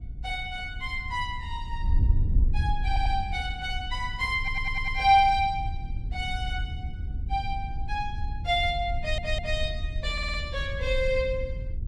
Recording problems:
wind noise; below 76 Hz, SNR 4 dB
audio stuttering; 4 times, first at 3 s

